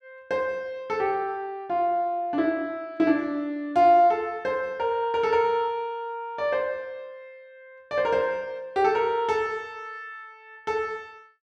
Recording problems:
none

